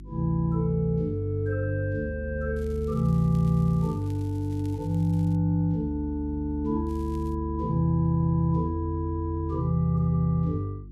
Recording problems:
electrical hum; 50 Hz, harmonics up to 350 Hz, SNR 18 dB
crackle; from 2.5 to 5.5 s and at 7 s; loose cable, SNR 30 dB

